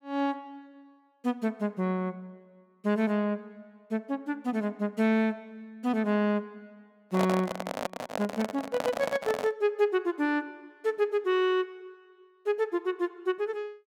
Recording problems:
microphone handling noise; from 7 to 9.5 s; peak +3 dB vs average level

